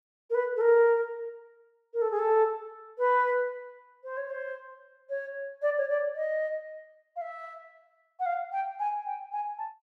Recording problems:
none

